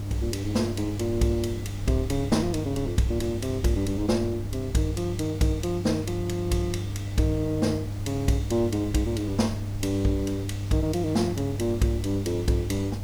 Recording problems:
hum; 50 Hz, harmonics up to 400 Hz, SNR 6 dB
hiss; slope -4 dB per octave, SNR 19 dB
low-frequency rumble; below 90 Hz, SNR 13 dB

